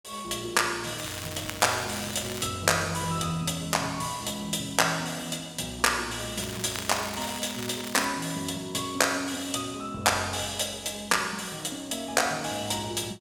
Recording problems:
crackling; from 1 to 2.5 s and from 6.5 to 8 s; loose cable, SNR 10 dB

